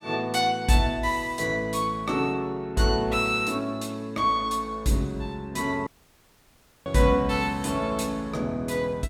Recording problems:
audio cutting out; at 6 s for 1 s

